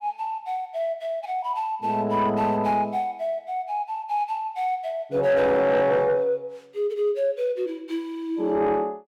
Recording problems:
distortion; soft clipping, signal-to-distortion ratio 11 dB

